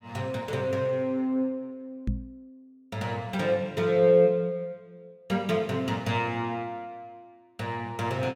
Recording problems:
microphone thump; at 2 s; peak +1 dB vs average level

